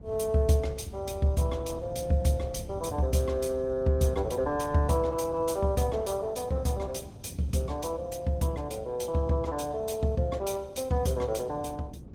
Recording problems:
lossy codec; Opus, log-spectral distance 3 dB, nothing above 15.5 kHz
low-frequency rumble; below 180 Hz, SNR 14 dB

